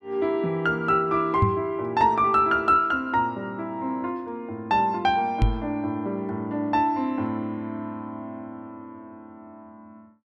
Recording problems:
microphone thump; at 1.5 s and at 5.5 s; peak +6 dB vs average level

